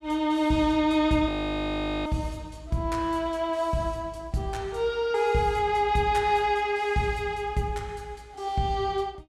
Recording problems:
frozen audio; at 1.5 s for 1 s

